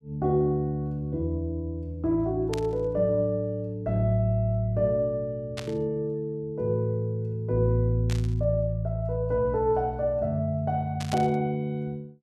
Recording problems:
static burst; 4 times, first at 2.5 s; peak -4 dB vs average level

